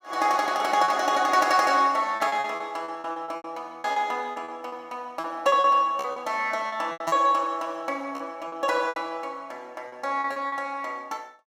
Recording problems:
packet loss; 12% of the sound replaced, filled with repeated pitch periods

